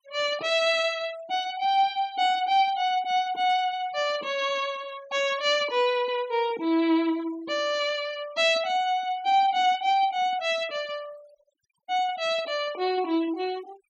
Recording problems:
denoising artefacts; signal-to-artefact ratio 21 dB

